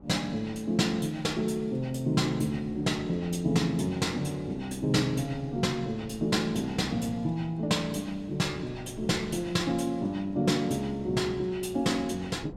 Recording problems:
wind on the microphone; below 340 Hz, SNR 20 dB

